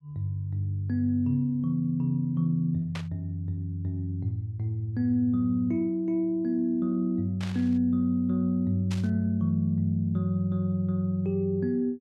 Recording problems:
static burst; at 3 s, at 7.5 s and at 9 s; peak -7 dB vs average level

